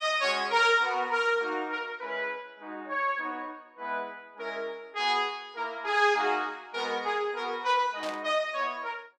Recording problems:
static burst; at 8 s; peak -7 dB vs average level

